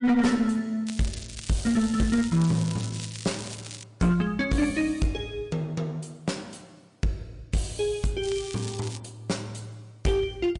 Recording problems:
lossy compression; MP3, log-spectral distance 5 dB
distorted audio; hard clipping, uneven, signal-to-distortion ratio 11 dB
crackling; from 1 to 4 s and at 8 s; loose cable, SNR 12 dB

